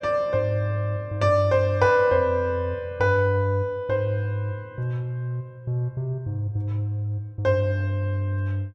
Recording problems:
none

